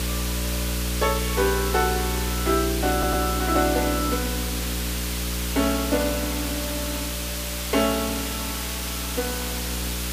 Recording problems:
hum; 60 Hz, harmonics up to 600 Hz, SNR 4 dB
hiss; slope +2 dB per octave, SNR 3 dB
stutter; at 3 s

